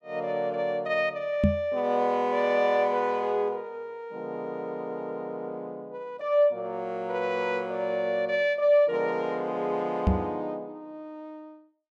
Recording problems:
microphone thump; at 1.5 s and at 10 s; peak +9 dB vs average level

